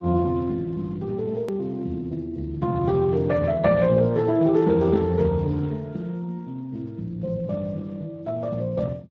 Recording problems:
codec artefacts; Speex, log-spectral distance 2 dB, nothing above 13.7 kHz
hard cut with a click; at 1.5 s

